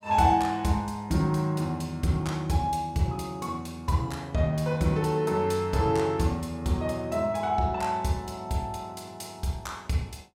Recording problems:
none

